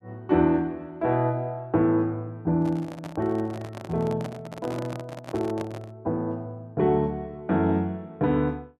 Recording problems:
microphone handling noise; from 2.5 to 6 s; peak -6 dB vs average level

